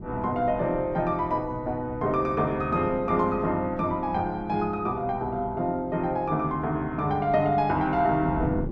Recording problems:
wind on the microphone; below 250 Hz, SNR 15 dB

